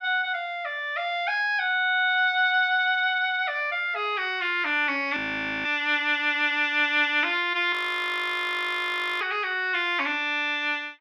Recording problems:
frozen audio; at 5 s and at 7.5 s for 1.5 s

